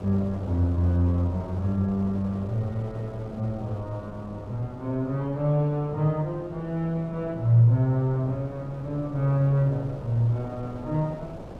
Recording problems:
wind on the microphone; below 560 Hz, SNR 15 dB

